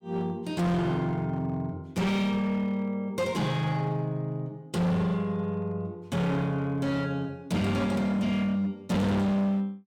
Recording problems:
distorted audio; hard clipping, signal-to-distortion ratio 6 dB

